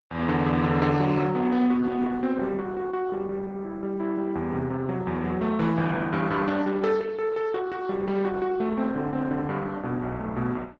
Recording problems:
lossy compression; Opus, log-spectral distance 3 dB

